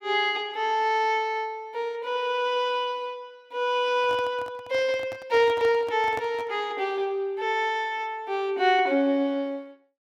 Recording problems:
microphone handling noise; from 4 to 6.5 s; peak -8 dB vs average level

